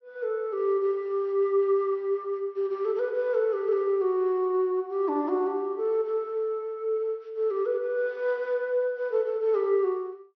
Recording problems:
treble missing; nothing above 5.9 kHz

